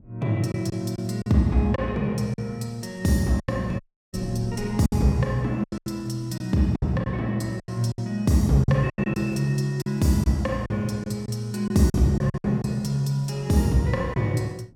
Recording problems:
wind noise; below 230 Hz, SNR 22 dB
packet loss; 8% of the sound replaced, filled with silence
dropout; at 4 s

